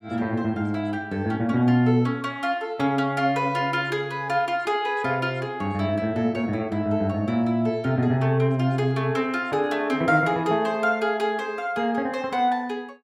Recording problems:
none

